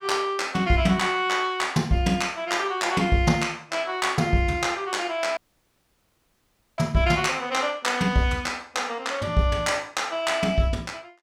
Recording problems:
dropout; at 5.5 s for 1.5 s

